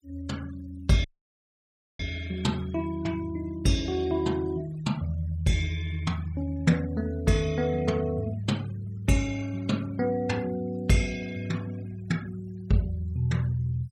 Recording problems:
noise reduction artefacts; signal-to-artefact ratio 22 dB
audio cutting out; at 1 s for 1 s

